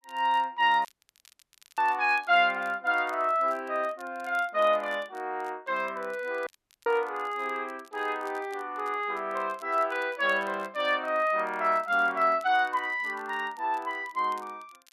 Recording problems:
crackle; vinyl, SNR 30 dB
dropout; at 1 s for 1 s and at 6.5 s

